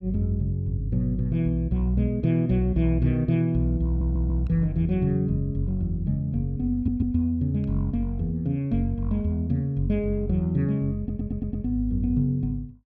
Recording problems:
stutter; at 4 s, at 6.5 s and at 11 s

